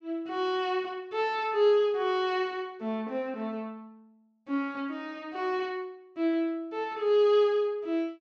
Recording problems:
none

